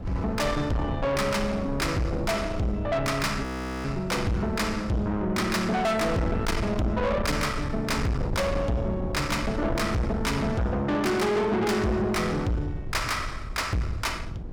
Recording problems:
distorted audio; soft clipping, signal-to-distortion ratio 7 dB
rumble; below 210 Hz, SNR 8 dB
frozen audio; at 3.5 s

